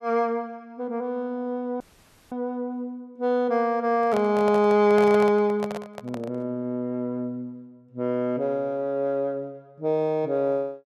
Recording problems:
audio cutting out; at 2 s for 0.5 s
handling noise; from 4 to 6.5 s; peak -4 dB vs average level

